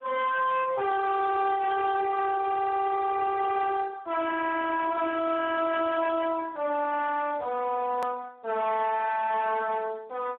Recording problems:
telephone audio; 340 Hz to 3.6 kHz, Speex
distortion; soft clipping, signal-to-distortion ratio 6 dB
hard cut with a click; at 8 s

